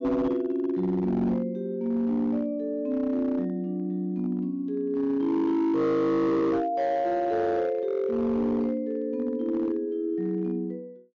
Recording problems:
low-pass filter; nothing above 6.9 kHz
distortion; hard clipping, signal-to-distortion ratio 12 dB

